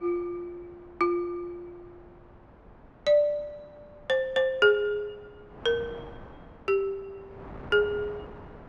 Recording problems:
wind on the microphone; below 840 Hz, SNR 21 dB

